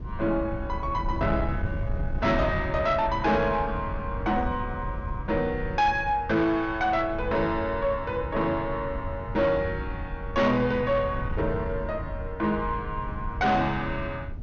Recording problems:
treble cut off; nothing above 6.7 kHz
distortion; soft clipping, signal-to-distortion ratio 12 dB
rumble; below 120 Hz, SNR 8 dB

